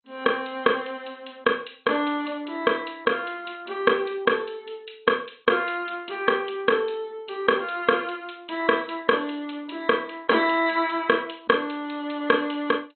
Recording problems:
lossy codec; MP2, log-spectral distance 7 dB, nothing above 3.7 kHz

